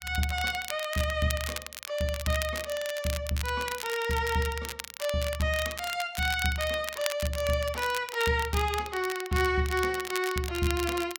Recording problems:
crackle; vinyl, SNR 9 dB

